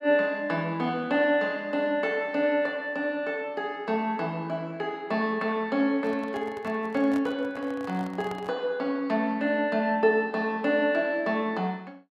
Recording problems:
microphone handling noise; from 6 to 8.5 s; peak -8 dB vs average level

